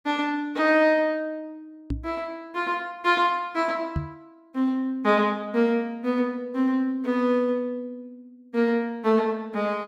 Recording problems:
knock on the microphone; at 2 s and at 4 s; peak 0 dB vs average level

